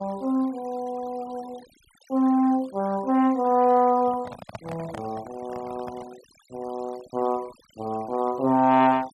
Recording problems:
denoising artefacts; signal-to-artefact ratio 24 dB
handling noise; from 4 to 6 s; peak -8 dB vs average level

